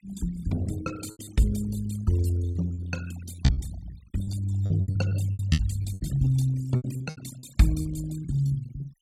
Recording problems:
noise reduction artefacts; signal-to-artefact ratio 17 dB
lost packets; 14% of the sound replaced, filled with repeated pitch periods

